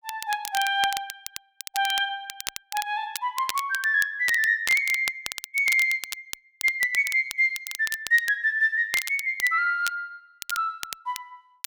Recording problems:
crackling; vinyl, SNR 11 dB

